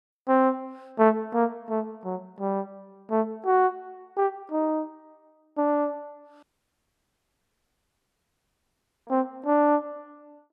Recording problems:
dropout; at 6.5 s for 2.5 s

